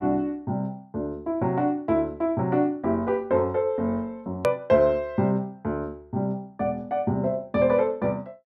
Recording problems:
hard cut with a click; at 4.5 s

